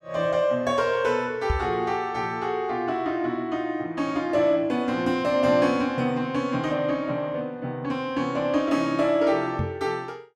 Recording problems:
microphone bump; at 1.5 s and at 9.5 s; peak +2 dB vs average level

